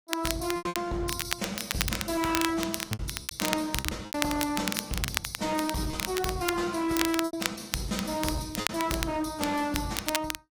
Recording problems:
codec artefacts; AAC, log-spectral distance 4 dB
distortion; hard clipping, signal-to-distortion ratio 7 dB
crackling; vinyl, SNR 3 dB
packet loss; 7% of the sound replaced, filled with repeated pitch periods

